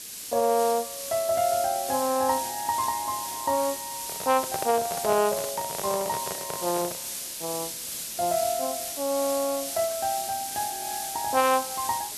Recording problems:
background hiss; SNR 5 dB
handling noise; from 4 to 7 s; peak -1 dB vs average level

